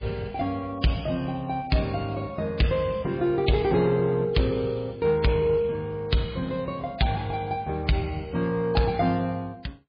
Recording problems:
lossy codec; MP3, log-spectral distance 2 dB, nothing above 4.4 kHz
distortion; soft clipping, signal-to-distortion ratio 11 dB

